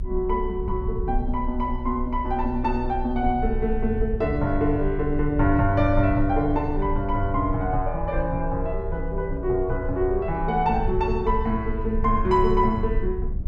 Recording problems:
rumble; below 62 Hz, strongest tone 24 Hz, SNR 7 dB

